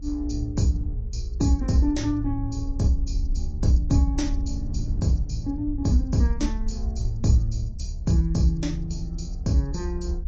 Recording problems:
lossy compression; AAC, log-spectral distance 2 dB, nothing above 6.9 kHz
low-frequency rumble; below 62 Hz, strongest tone 36 Hz, SNR 7 dB
wind on the microphone; below 110 Hz, SNR 15 dB

